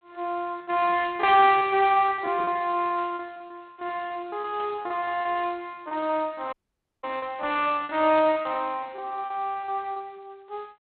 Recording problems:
phone line; 280 Hz to 3.5 kHz, G.726
packet loss; 19% of the sound replaced, filled with repeated pitch periods
static burst; 4 times, first at 1.5 s; peak -15 dB vs average level
dropout; at 6.5 s for 0.5 s

